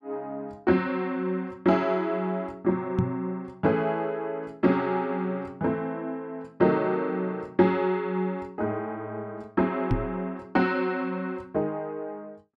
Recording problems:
knock on the microphone; at 3 s and at 10 s; peak +6 dB vs average level

